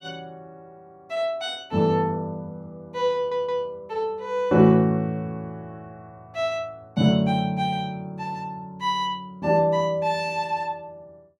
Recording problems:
audio stuttering; at 3 s

